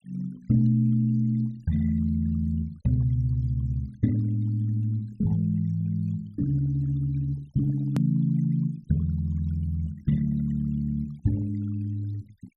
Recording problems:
noise reduction artefacts; signal-to-artefact ratio 27 dB
click at an edit; at 8 s

